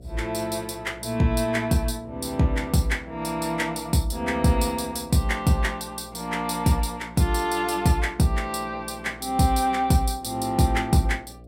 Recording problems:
hum; 60 Hz, harmonics up to 720 Hz, SNR 22 dB

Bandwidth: 16 kHz